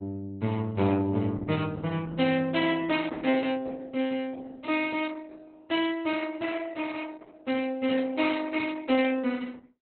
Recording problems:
lossy compression; Opus, log-spectral distance 4 dB, nothing above 4 kHz
burst of static; at 7.5 s; peak -17 dB vs average level

